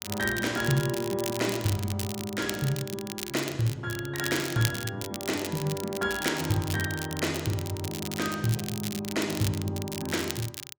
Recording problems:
crackling; vinyl, SNR 7 dB

